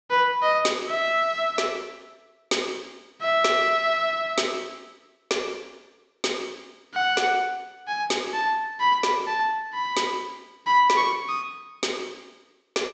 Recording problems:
treble missing; nothing above 8 kHz

